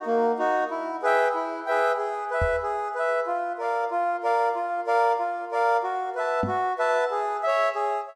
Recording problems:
microphone bump; at 2.5 s and at 6.5 s; peak 0 dB vs average level

